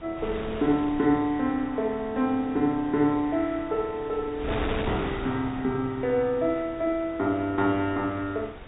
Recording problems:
low-pass filter; nothing above 4 kHz
wind noise; below 1.2 kHz, SNR 12 dB

